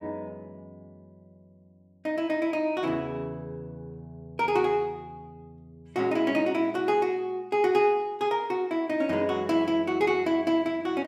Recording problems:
none

